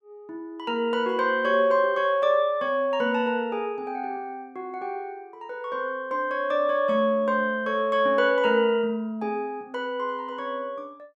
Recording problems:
none

